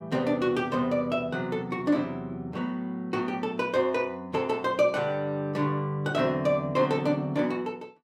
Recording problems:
none

